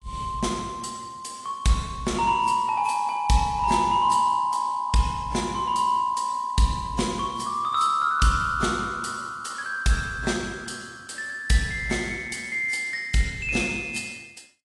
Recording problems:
lossy compression; AAC, log-spectral distance 4 dB, nothing above 10.7 kHz

